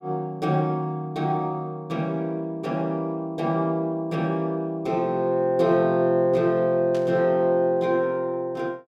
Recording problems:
static burst; at 7 s; peak -14 dB vs average level

